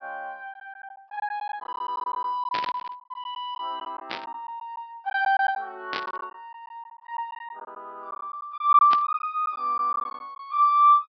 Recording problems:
treble cut off; nothing above 5.5 kHz
packet loss; 10% of the sound replaced, filled with silence
static burst; 4 times, first at 2.5 s; peak -1 dB vs average level

